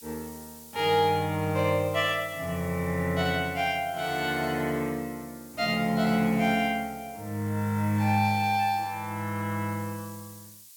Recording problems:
background hiss; slope +5 dB per octave, SNR 19 dB

